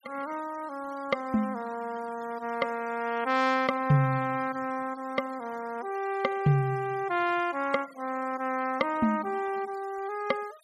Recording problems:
noise reduction artefacts; signal-to-artefact ratio 22 dB

